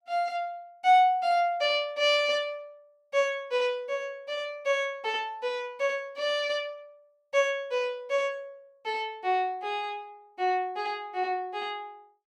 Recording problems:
none

